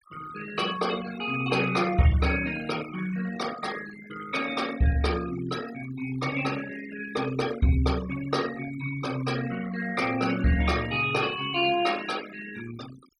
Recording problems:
noise reduction artefacts; signal-to-artefact ratio 13 dB

